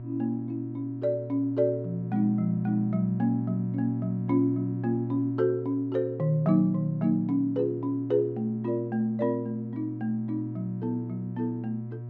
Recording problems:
hum; 60 Hz, harmonics up to 720 Hz, SNR 8 dB

